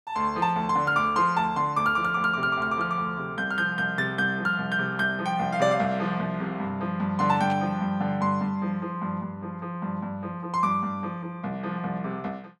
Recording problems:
static burst; at 7.5 s; peak -11 dB vs average level

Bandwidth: 14 kHz